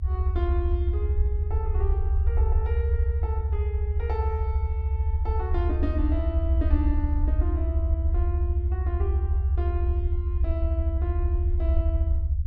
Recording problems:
low-frequency rumble; below 78 Hz, SNR -10 dB

